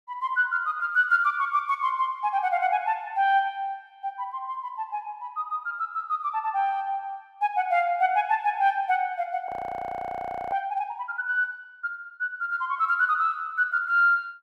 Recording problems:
audio freezing; at 9.5 s for 1 s

